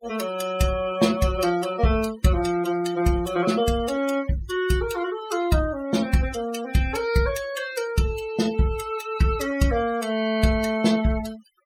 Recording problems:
denoising artefacts; signal-to-artefact ratio 15 dB

